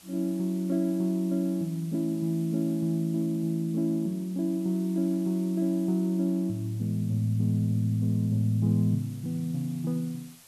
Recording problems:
background hiss; slope 0 dB per octave, SNR 24 dB

